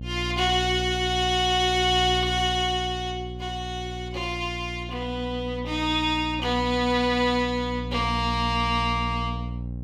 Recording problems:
electrical hum; 60 Hz, harmonics up to 540 Hz, SNR 9 dB

